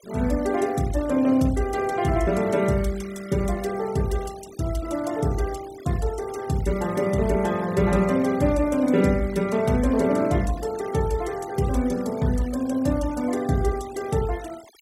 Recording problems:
denoising artefacts; signal-to-artefact ratio 20 dB

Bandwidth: 16 kHz